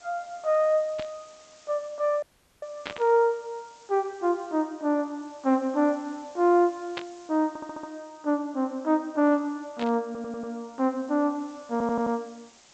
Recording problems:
lossy compression; G.722, log-spectral distance 8 dB
hiss; slope -1 dB per octave, SNR 27 dB
static burst; 4 times, first at 1 s; peak -3 dB vs average level
dropout; at 2 s
audio stuttering; at 7.5 s, at 10 s and at 12 s

